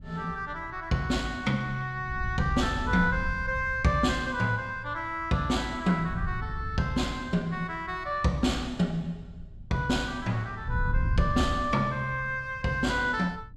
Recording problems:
wind noise; below 100 Hz, SNR 10 dB

